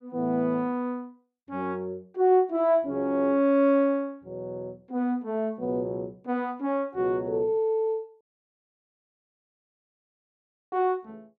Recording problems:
audio cutting out; at 8 s for 2.5 s

